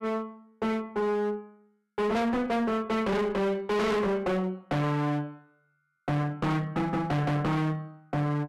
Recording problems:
distorted audio; hard clipping, uneven, signal-to-distortion ratio 5 dB

